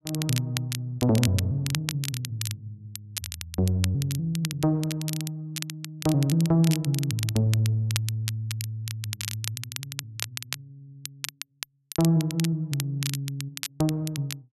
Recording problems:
crackling; vinyl, SNR 9 dB

